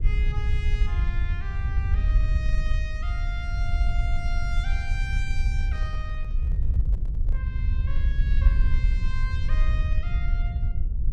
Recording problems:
rumble; below 64 Hz, SNR -12 dB
handling noise; from 5.5 to 7.5 s; peak -8 dB vs average level

